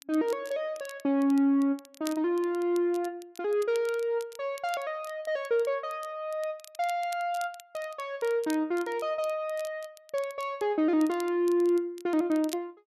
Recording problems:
crackle; vinyl, SNR 21 dB

